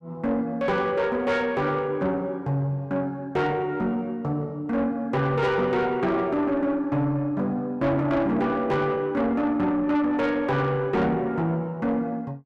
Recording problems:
distortion; soft clipping, signal-to-distortion ratio 11 dB

